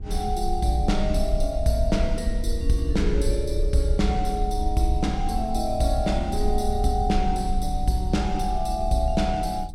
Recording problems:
hum; 50 Hz, harmonics up to 800 Hz, SNR 23 dB
rumble; below 56 Hz, strongest tone 22 Hz, SNR 4 dB

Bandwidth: 16 kHz